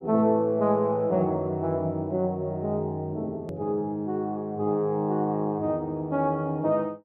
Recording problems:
edit click; at 3.5 s

